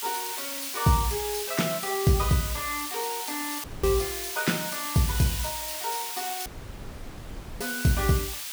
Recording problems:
background hiss; slope +4 dB per octave, SNR 4 dB
dropout; at 3.5 s and at 6.5 s for 1 s

